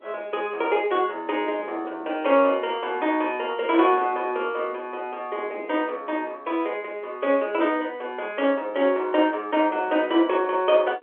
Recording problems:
phone line; 320 Hz to 3.3 kHz, G.711
wind noise; below 590 Hz, SNR 21 dB

